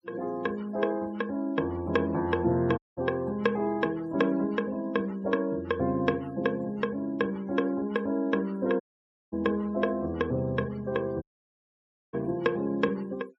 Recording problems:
denoising artefacts; signal-to-artefact ratio 25 dB
dropout; at 3 s, at 9 s for 0.5 s and at 11 s for 1 s

